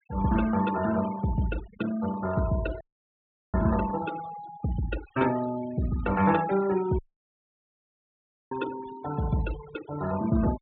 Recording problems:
treble missing; nothing above 4 kHz
denoising artefacts; signal-to-artefact ratio 14 dB
audio cutting out; at 3 s for 0.5 s and at 7 s for 1.5 s

